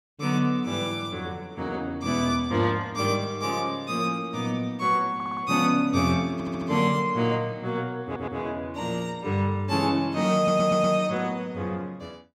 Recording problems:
audio stuttering; 4 times, first at 5 s

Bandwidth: 16 kHz